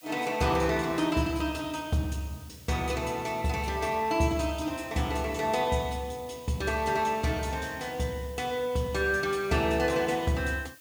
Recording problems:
hiss; slope +4 dB per octave, SNR 22 dB

